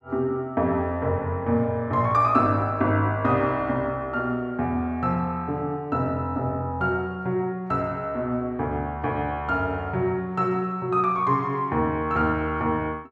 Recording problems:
none

